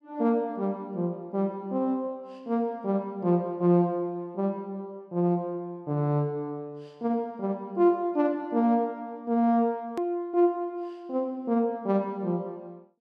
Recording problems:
click at an edit; at 10 s

